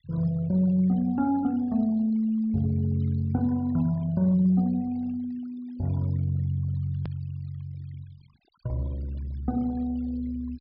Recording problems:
treble cut off; nothing above 5.5 kHz
denoising artefacts; signal-to-artefact ratio 27 dB
click at an edit; at 7 s

